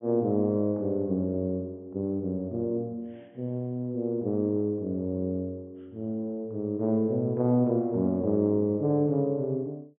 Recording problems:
low-pass filter; nothing above 3.4 kHz

